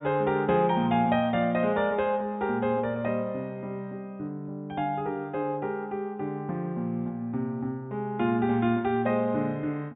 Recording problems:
treble cut off; nothing above 4 kHz

